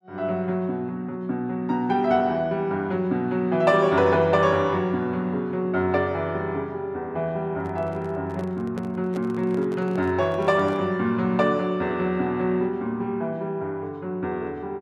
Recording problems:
microphone handling noise; from 7.5 to 11 s; peak -8 dB vs average level

